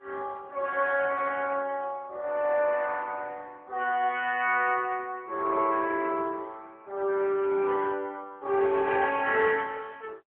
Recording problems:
telephone audio; 300 Hz to 3.3 kHz, AMR-NB

